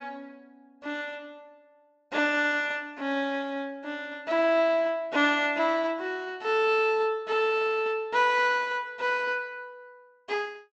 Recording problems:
low-pass filter; nothing above 8 kHz

